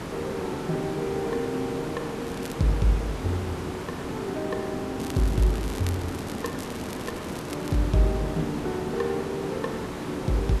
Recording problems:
hiss; slope -7 dB per octave, SNR 5 dB
crackle; at 2.5 s and from 5 to 8 s; loose cable, SNR 14 dB

